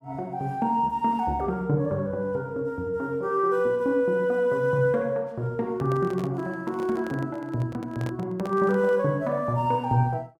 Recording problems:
handling noise; from 5.5 to 9 s; peak -7 dB vs average level

